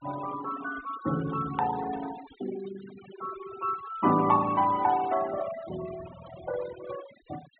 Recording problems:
treble cut off; nothing above 4 kHz
denoising artefacts; signal-to-artefact ratio 14 dB
edit click; at 1.5 s

